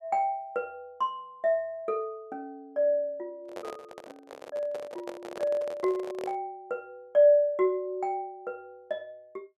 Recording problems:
handling noise; from 3.5 to 6.5 s; peak -4 dB vs average level

